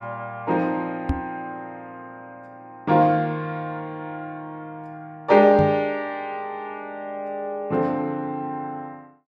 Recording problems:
knock on the microphone; at 1 s and at 5.5 s; peak +3 dB vs average level

